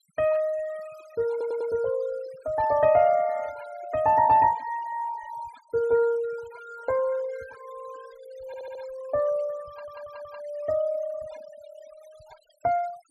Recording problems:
denoising artefacts; signal-to-artefact ratio 22 dB
stutter; at 1.5 s, at 8.5 s and at 9.5 s

